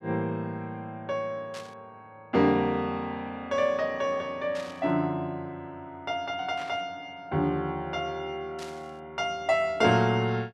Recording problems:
burst of static; 4 times, first at 1.5 s; peak -10 dB vs average level

